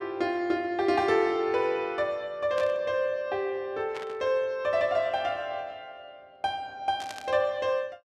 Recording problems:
static burst; at 2.5 s, at 4 s and at 7 s; peak -8 dB vs average level

